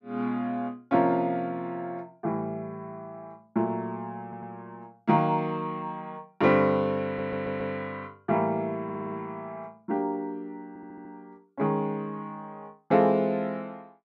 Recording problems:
audio stuttering; 4 times, first at 4 s

